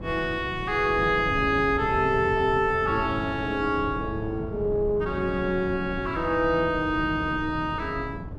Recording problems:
wind noise; below 240 Hz, SNR 11 dB

